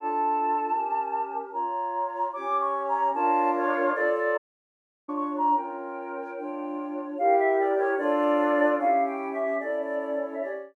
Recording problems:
audio cutting out; at 4.5 s for 0.5 s

